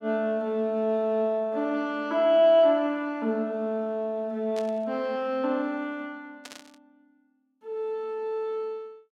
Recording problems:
static burst; at 4.5 s and at 6.5 s; peak -11 dB vs average level

